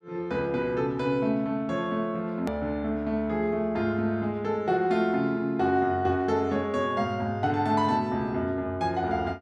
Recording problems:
edit click; at 2.5 s

